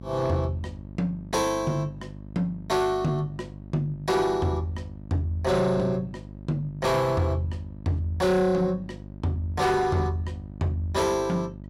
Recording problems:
distorted audio; soft clipping, signal-to-distortion ratio 11 dB
hum; 50 Hz, harmonics up to 650 Hz, SNR 15 dB

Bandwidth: 16 kHz